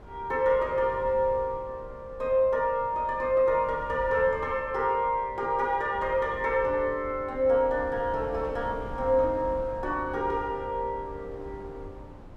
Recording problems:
wind noise; below 310 Hz, SNR 17 dB

